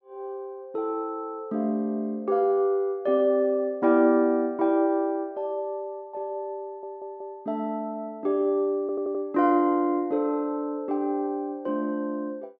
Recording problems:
audio stuttering; at 6.5 s and at 9 s

